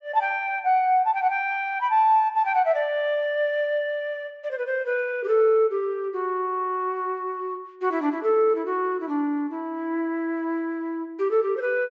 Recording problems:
treble missing; nothing above 8 kHz

